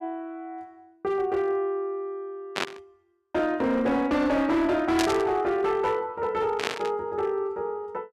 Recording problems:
distorted audio; hard clipping, signal-to-distortion ratio 11 dB
static burst; at 2.5 s, at 5 s and at 6.5 s; peak +2 dB vs average level

